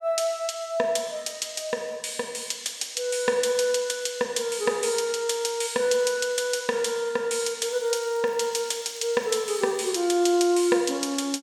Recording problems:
crackling; from 7.5 to 10 s; loose cable, SNR 26 dB

